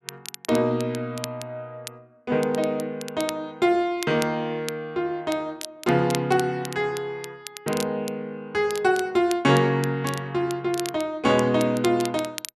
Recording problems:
crackle; vinyl, SNR 14 dB

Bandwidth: 12.5 kHz